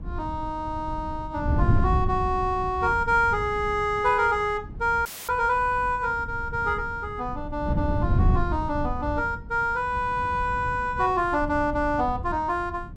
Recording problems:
wind noise; below 130 Hz, SNR 6 dB
audio cutting out; at 5 s

